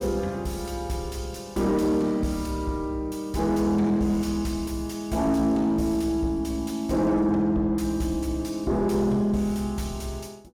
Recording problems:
distorted audio; soft clipping, signal-to-distortion ratio 10 dB

